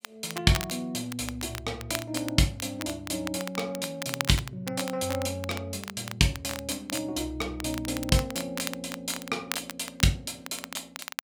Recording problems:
crackling; vinyl, SNR 9 dB

